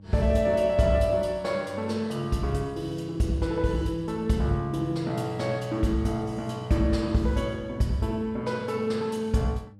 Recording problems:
electrical hum; 50 Hz, harmonics up to 600 Hz, SNR 19 dB

